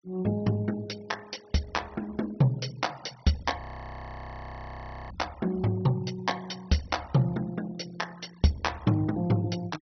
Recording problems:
low-pass filter; nothing above 6 kHz
denoising artefacts; signal-to-artefact ratio 21 dB
frozen audio; at 3.5 s for 1.5 s

